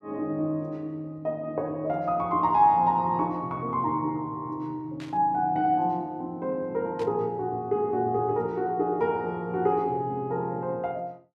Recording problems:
static burst; at 5 s and at 7 s; peak -14 dB vs average level

